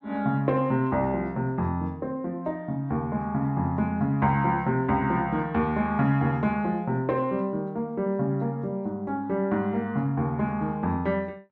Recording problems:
none

